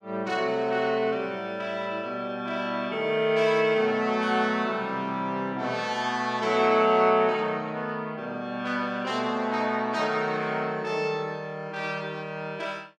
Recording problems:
none

